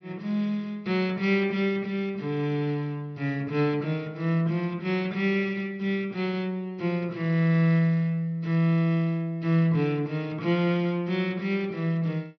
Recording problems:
low-pass filter; nothing above 6 kHz

